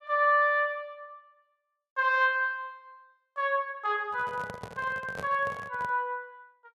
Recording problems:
microphone handling noise; from 4 to 6 s; peak -7 dB vs average level

